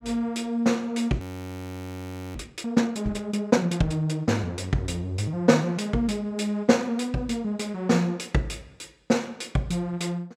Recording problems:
frozen audio; at 1 s for 1 s

